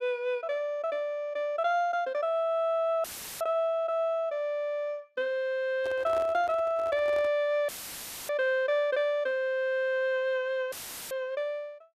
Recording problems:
dropout; at 3 s, at 7.5 s for 0.5 s and at 11 s; filled with static
handling noise; from 6 to 7.5 s; peak -8 dB vs average level

